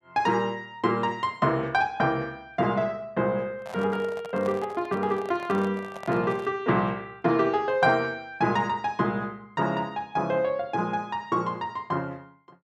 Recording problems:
handling noise; from 3.5 to 6.5 s; peak -8 dB vs average level

